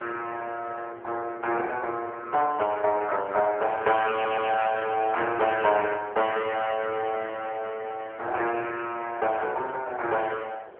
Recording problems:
telephone audio; 370 Hz to 3.2 kHz, AMR-NB
wind noise; below 850 Hz, SNR 21 dB
stutter; at 4 s

